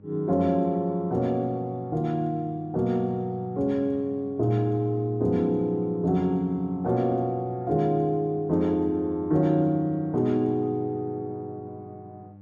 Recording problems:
electrical hum; 50 Hz, harmonics up to 800 Hz, SNR 23 dB

